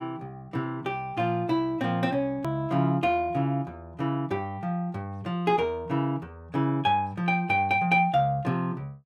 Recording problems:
hard cut with a click; at 2.5 s

